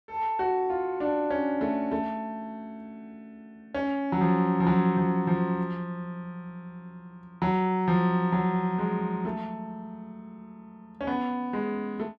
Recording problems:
none

